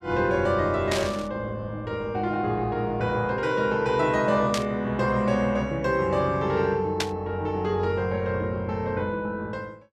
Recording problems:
static burst; at 1 s, at 4.5 s and at 7 s; peak +3 dB vs average level

